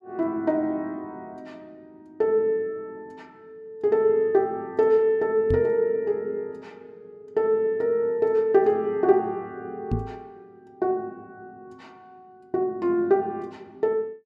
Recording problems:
knock on the microphone; at 5.5 s and at 10 s; peak +1 dB vs average level

